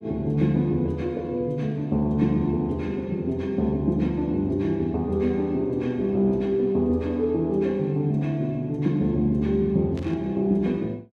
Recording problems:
static burst; at 10 s; peak -15 dB vs average level

